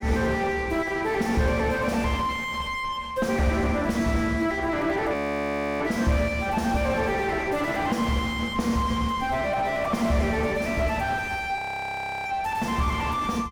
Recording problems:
distortion; soft clipping, signal-to-distortion ratio 5 dB
audio freezing; at 5 s for 0.5 s and at 12 s for 0.5 s

